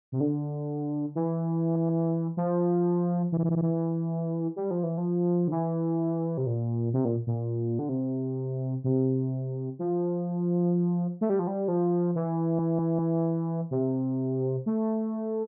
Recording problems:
stutter; at 1.5 s, at 3.5 s and at 12 s

